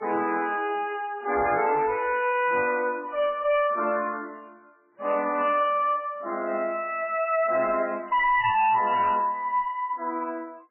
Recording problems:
lossy codec; MP3, then MP3, log-spectral distance 3 dB, nothing above 2.4 kHz
distortion; hard clipping, uneven, signal-to-distortion ratio 10 dB

